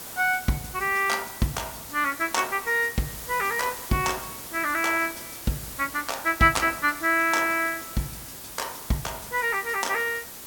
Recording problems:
background hiss; slope -2 dB per octave, SNR 11 dB

